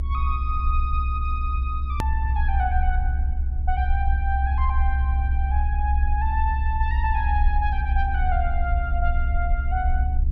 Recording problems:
hum; 60 Hz, harmonics up to 720 Hz, SNR 15 dB
low-frequency rumble; below 68 Hz, SNR -5 dB
edit click; at 2 s

